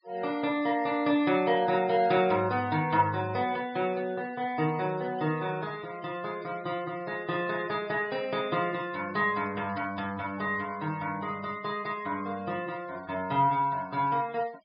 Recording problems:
treble cut off; nothing above 5.5 kHz
noise reduction artefacts; signal-to-artefact ratio 23 dB

